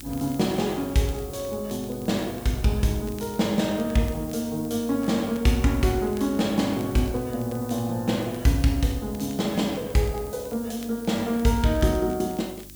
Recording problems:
mains hum; 50 Hz, harmonics up to 350 Hz, SNR 22 dB
hiss; SNR 18 dB
crackling; vinyl, SNR 27 dB

